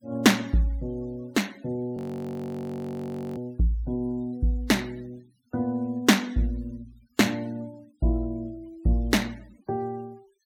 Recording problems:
denoising artefacts; signal-to-artefact ratio 27 dB
frozen audio; at 2 s for 1.5 s

